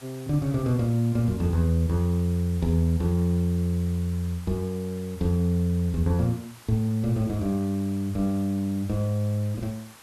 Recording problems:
background hiss; slope -1 dB per octave, SNR 22 dB

